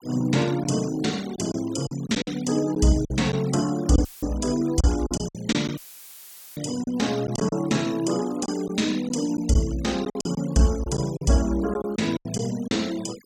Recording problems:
denoising artefacts; signal-to-artefact ratio 18 dB
lost packets; 8% of the sound replaced, filled with silence
dropout; at 4 s and at 6 s for 1 s; filled with static

